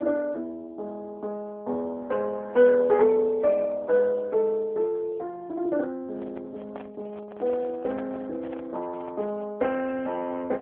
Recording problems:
phone line; 280 Hz to 2.1 kHz, AMR-NB
microphone handling noise; from 6 to 9.5 s; peak -11 dB vs average level

